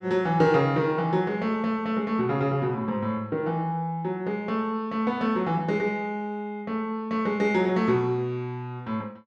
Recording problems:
none

